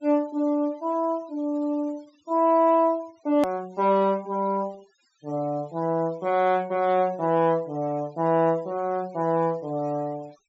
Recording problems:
treble cut off; nothing above 8 kHz
denoising artefacts; signal-to-artefact ratio 28 dB
click at an edit; at 3.5 s

